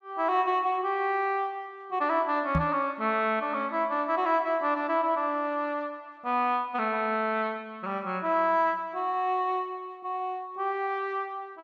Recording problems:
knock on the microphone; at 2.5 s; peak +4 dB vs average level

